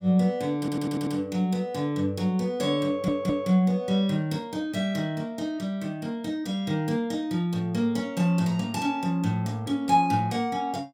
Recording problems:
audio stuttering; at 0.5 s and at 3 s

